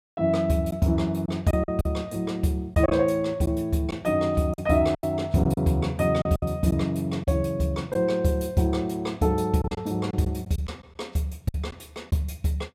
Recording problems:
packet loss; 6% of the sound replaced, filled with silence

